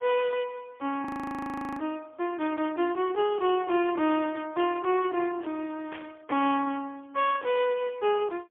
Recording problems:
phone line; 280 Hz to 3.3 kHz, AMR-NB, then MP3
frozen audio; at 1 s for 0.5 s
static burst; at 2.5 s, at 4.5 s and at 6 s; peak -10 dB vs average level

